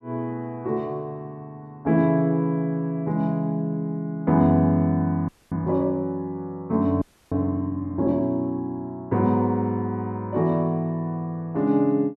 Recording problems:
audio freezing; at 5.5 s and at 7 s

